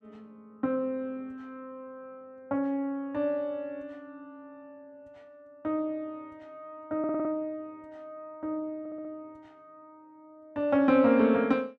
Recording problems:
stutter; at 7 s and at 9 s

